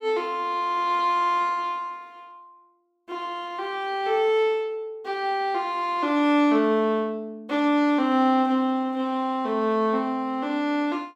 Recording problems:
none

